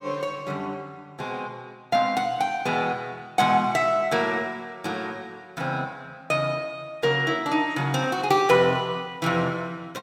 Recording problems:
none

